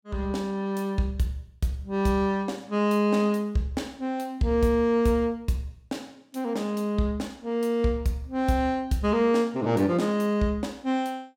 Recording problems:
none

